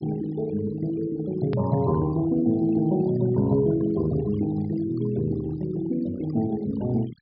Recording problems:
treble missing; nothing above 5.5 kHz
denoising artefacts; signal-to-artefact ratio 18 dB
click at an edit; at 1.5 s

